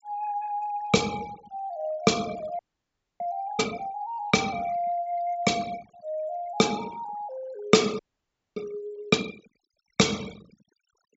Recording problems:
treble missing; nothing above 8 kHz
denoising artefacts; signal-to-artefact ratio 20 dB
frozen audio; at 2.5 s for 0.5 s and at 8 s for 0.5 s

